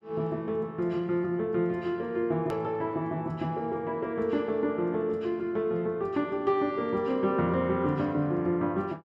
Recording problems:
edit click; at 2.5 s

